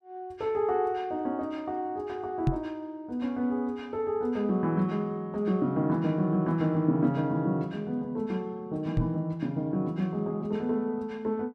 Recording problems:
microphone thump; at 2.5 s and at 9 s; peak +7 dB vs average level

